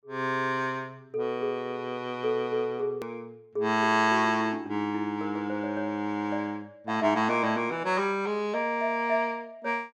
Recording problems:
hard cut with a click; at 3 s

